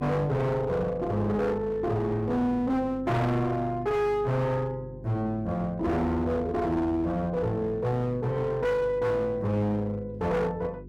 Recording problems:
distortion; hard clipping, uneven, signal-to-distortion ratio 7 dB
mains hum; 50 Hz, harmonics up to 400 Hz, SNR 16 dB

